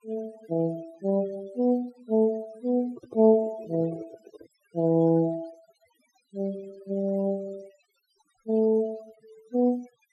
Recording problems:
noise reduction artefacts; signal-to-artefact ratio 23 dB
microphone handling noise; from 3 to 4.5 s; peak -11 dB vs average level

